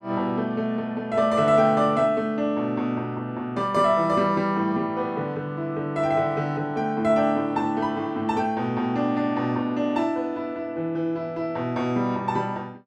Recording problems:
none

